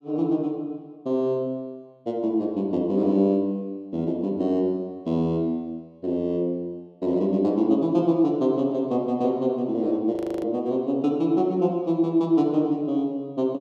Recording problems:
audio freezing; at 10 s

